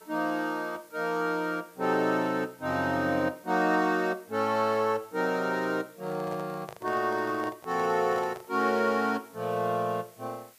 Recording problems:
hiss; slope 0 dB per octave, SNR 27 dB
microphone handling noise; from 6 to 8.5 s; peak -10 dB vs average level

